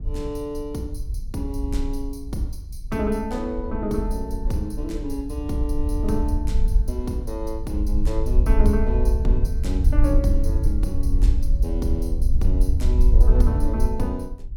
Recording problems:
wind noise; below 60 Hz, SNR -4 dB

